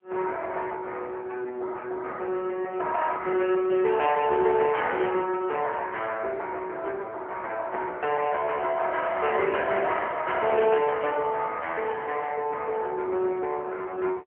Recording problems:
phone line; 280 Hz to 3.2 kHz, AMR-NB

